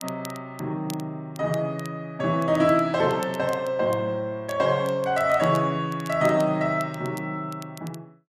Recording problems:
crackle; vinyl, SNR 22 dB

